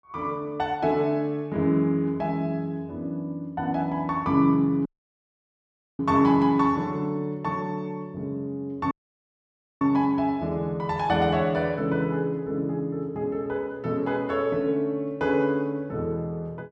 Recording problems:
dropout; at 5 s for 1 s and at 9 s for 1 s

